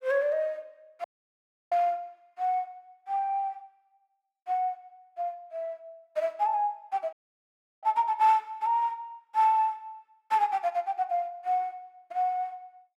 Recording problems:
audio cutting out; at 1 s for 0.5 s and at 7 s for 0.5 s

